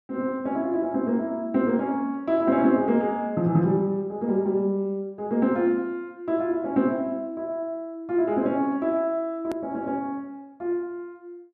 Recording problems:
hard cut with a click; at 9.5 s

